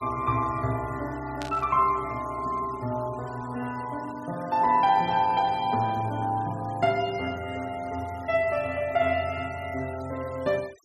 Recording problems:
denoising artefacts; signal-to-artefact ratio 21 dB
burst of static; at 1.5 s; peak -7 dB vs average level

